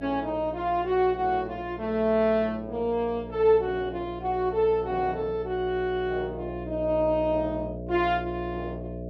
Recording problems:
mains hum; 60 Hz, harmonics up to 660 Hz, SNR 12 dB

